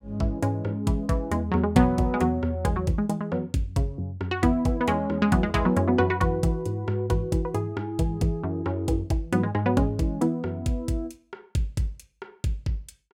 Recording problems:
none

